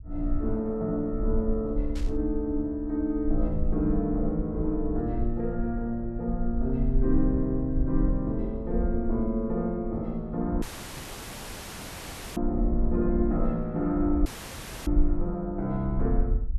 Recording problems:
rumble; below 50 Hz, SNR 5 dB
burst of static; at 2 s; peak -12 dB vs average level
audio cutting out; at 11 s for 1.5 s and at 14 s for 0.5 s

